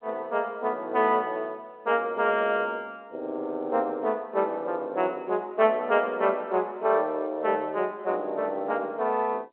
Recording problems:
telephone audio; 260 Hz to 3.2 kHz, G.711

